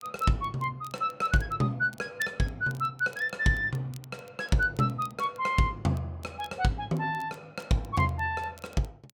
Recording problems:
crackle; vinyl, SNR 26 dB

